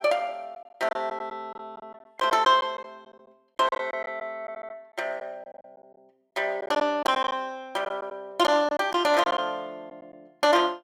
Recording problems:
lost packets; 9% of the sound replaced, filled with silence

